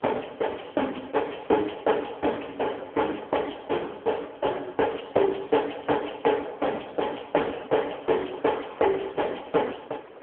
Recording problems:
phone line; 320 Hz to 3.3 kHz, AMR-NB
distortion; hard clipping, uneven, signal-to-distortion ratio 17 dB
wind on the microphone; below 1 kHz, SNR 22 dB

